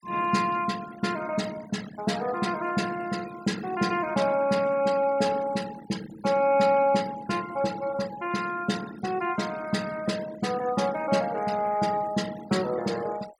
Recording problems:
noise reduction artefacts; signal-to-artefact ratio 18 dB

